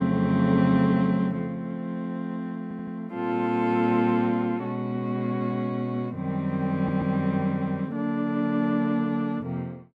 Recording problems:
audio stuttering; at 2.5 s and at 7 s

